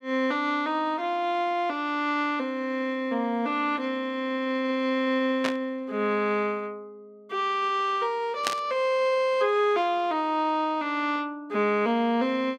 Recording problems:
burst of static; at 5.5 s and at 8.5 s; peak +3 dB vs average level

